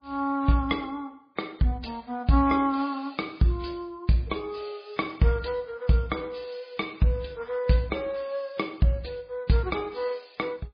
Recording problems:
lossy compression; MP3, log-spectral distance 3 dB, nothing above 4.6 kHz

